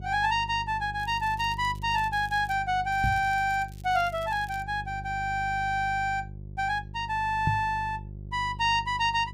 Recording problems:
electrical hum; 50 Hz, harmonics up to 400 Hz, SNR 14 dB
crackle; from 1 to 2.5 s and from 3 to 4.5 s; loose cable, SNR 26 dB
knock on the microphone; at 3 s and at 7.5 s; peak +3 dB vs average level

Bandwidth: 15.5 kHz